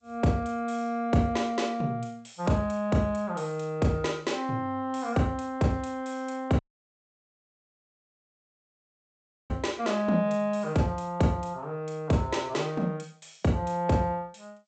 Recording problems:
lossy compression; G.722, log-spectral distance 3 dB, nothing above 7.8 kHz
audio cutting out; at 6.5 s for 3 s

